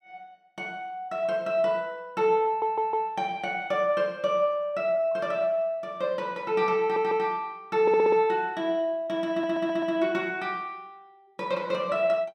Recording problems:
stutter; 4 times, first at 2.5 s

